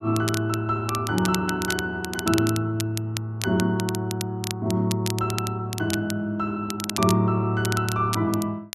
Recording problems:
crackling; vinyl, SNR 9 dB

